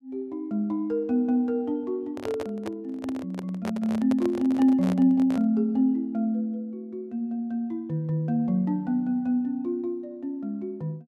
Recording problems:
handling noise; from 2 to 5.5 s; peak -4 dB vs average level

